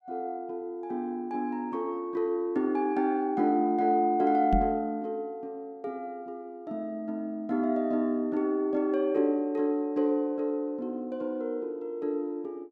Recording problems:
knock on the microphone; at 4.5 s; peak +5 dB vs average level

